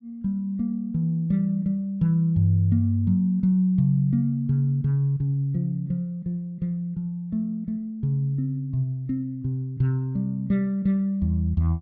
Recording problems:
none

